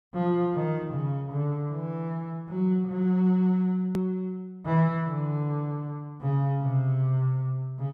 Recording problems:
hard cut with a click; at 4 s

